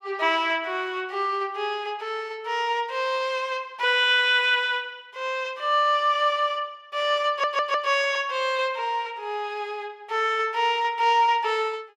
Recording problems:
stutter; at 7.5 s

